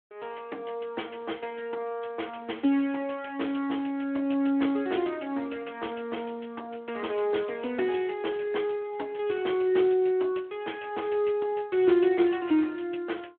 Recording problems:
phone line; 240 Hz to 3.4 kHz, Speex

